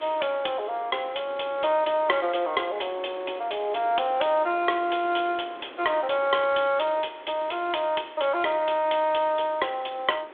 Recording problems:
telephone audio; 280 Hz to 3.6 kHz, G.726
background hiss; SNR 22 dB
wind on the microphone; below 1.1 kHz, SNR 22 dB

